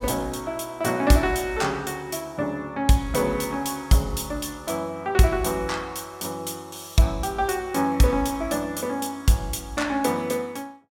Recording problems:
none

